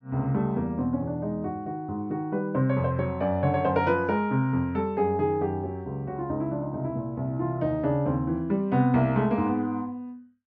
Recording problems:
none

